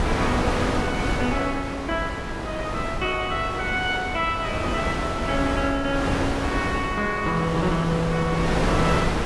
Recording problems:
lossy codec; AAC, log-spectral distance 3 dB
electrical hum; 50 Hz, harmonics up to 450 Hz, SNR 17 dB
wind on the microphone; below 1.1 kHz, SNR 1 dB

